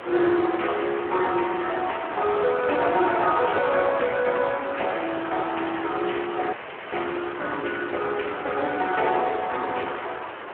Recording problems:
telephone audio; 280 Hz to 3.3 kHz, Speex
background hiss; SNR 10 dB
dropout; at 6.5 s

